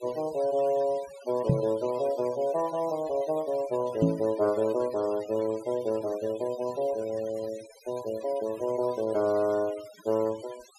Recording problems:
noise reduction artefacts; signal-to-artefact ratio 19 dB
microphone thump; at 1.5 s and at 4 s; peak +8 dB vs average level

